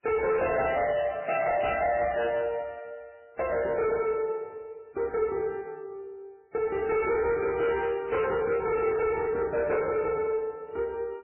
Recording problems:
codec artefacts; MP3, then MP3, log-spectral distance 3 dB, nothing above 2.7 kHz
distorted audio; soft clipping, signal-to-distortion ratio 8 dB

